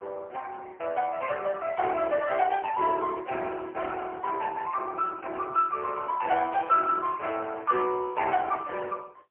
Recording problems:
telephone audio; 390 Hz to 2.6 kHz, AMR-NB, then MP3

